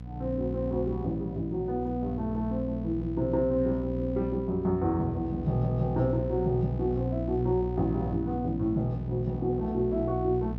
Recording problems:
hum; 60 Hz, harmonics up to 540 Hz, SNR 6 dB

